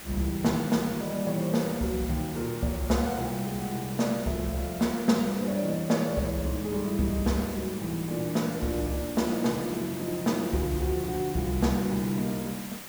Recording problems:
background hiss; slope -2 dB per octave, SNR 12 dB

